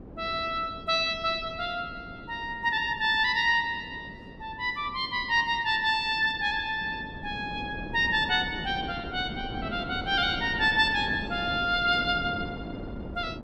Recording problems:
wind on the microphone; below 400 Hz, SNR 14 dB

